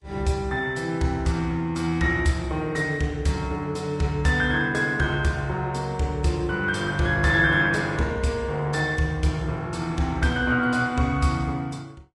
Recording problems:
codec artefacts; Vorbis, log-spectral distance 2 dB, nothing above 10.7 kHz

